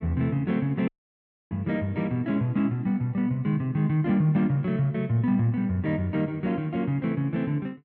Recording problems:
audio cutting out; at 1 s for 0.5 s

